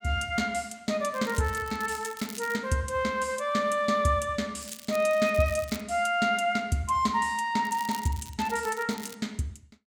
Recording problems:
crackling; from 1 to 2.5 s, from 4.5 to 6 s and from 7.5 to 9 s; loose cable, SNR 16 dB

